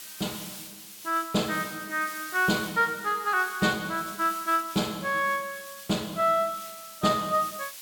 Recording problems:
background hiss; slope +3 dB per octave, SNR 14 dB

